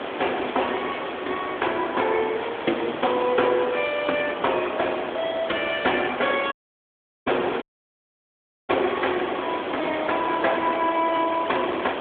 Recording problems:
telephone audio; 240 Hz to 3.5 kHz, AMR-NB
hiss; SNR 6 dB
crackling; from 4 to 7.5 s; loose cable, SNR 27 dB
dropout; at 6.5 s for 0.5 s and at 7.5 s for 1 s

